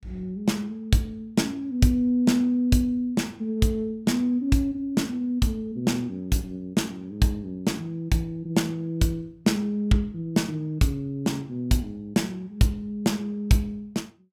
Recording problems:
none

